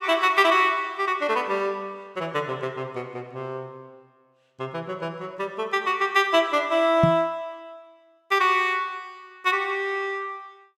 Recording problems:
knock on the microphone; at 7 s; peak +6 dB vs average level

